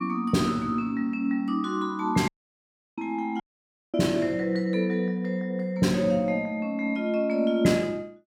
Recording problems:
audio cutting out; at 2.5 s for 0.5 s and at 3.5 s for 0.5 s

